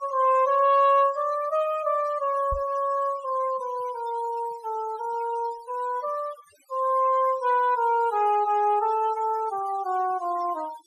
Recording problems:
denoising artefacts; signal-to-artefact ratio 21 dB
microphone bump; at 2.5 s; peak -5 dB vs average level

